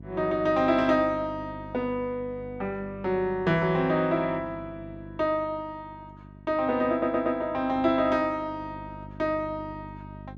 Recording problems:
electrical hum; 50 Hz, harmonics up to 650 Hz, SNR 18 dB
audio stuttering; at 7 s

